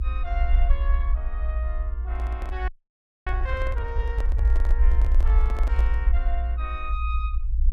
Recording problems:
low-frequency rumble; below 60 Hz, SNR -11 dB
handling noise; from 2 to 6 s; peak +1 dB vs average level
frozen audio; at 2.5 s for 0.5 s

